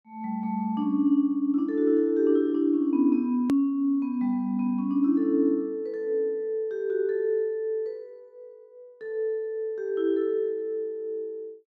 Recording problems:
click at an edit; at 3.5 s

